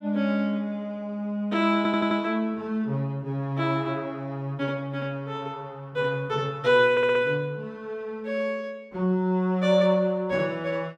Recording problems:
audio stuttering; at 2 s and at 7 s

